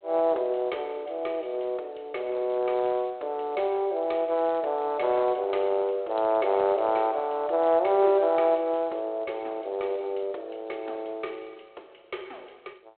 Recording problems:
phone line; 320 Hz to 3.6 kHz, G.726

